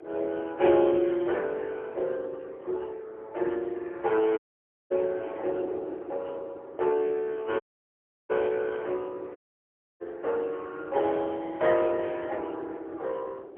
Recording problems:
phone line; 300 Hz to 3.4 kHz, AMR-NB, then MP3
wind noise; below 510 Hz, SNR 16 dB
dropout; at 4.5 s for 0.5 s, at 7.5 s for 0.5 s and at 9.5 s for 0.5 s

